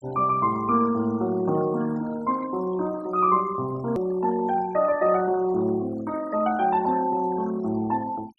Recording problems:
noise reduction artefacts; signal-to-artefact ratio 19 dB
edit click; at 4 s

